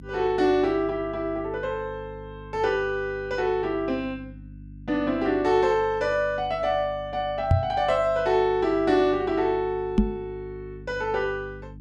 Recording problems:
electrical hum; 50 Hz, harmonics up to 300 Hz, SNR 18 dB
microphone bump; at 7.5 s and at 10 s; peak +9 dB vs average level

